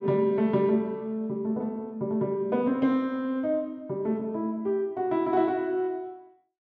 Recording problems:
none

